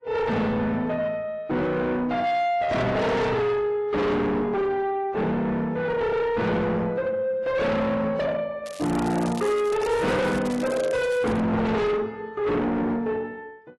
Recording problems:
lossy codec; AAC, log-spectral distance 2 dB, nothing above 11.6 kHz
distorted audio; soft clipping, signal-to-distortion ratio 7 dB
crackling; from 8.5 to 11 s; loose cable, SNR 15 dB

